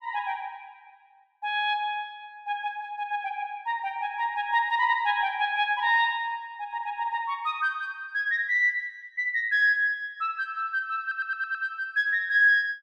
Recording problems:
audio stuttering; at 11 s

